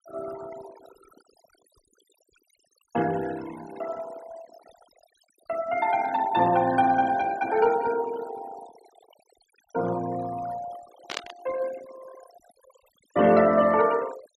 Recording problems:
noise reduction artefacts; signal-to-artefact ratio 17 dB
burst of static; at 11 s; peak -2 dB vs average level

